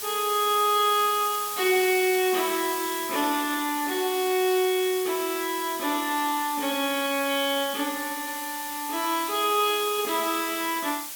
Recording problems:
background hiss; slope +2 dB per octave, SNR 7 dB

